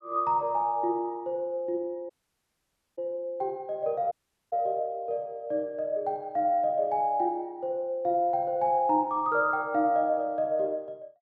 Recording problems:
audio cutting out; at 2 s for 1 s and at 4 s

